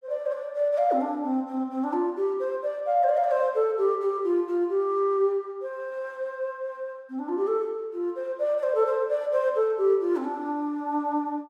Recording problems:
none

